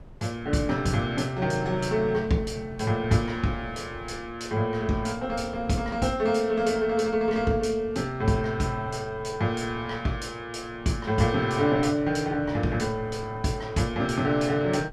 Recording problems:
wind on the microphone; below 270 Hz, SNR 19 dB

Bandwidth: 14.5 kHz